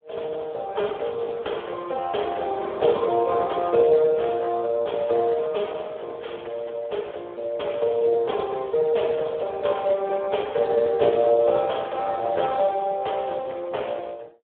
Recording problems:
telephone audio; 300 Hz to 3.4 kHz, Speex

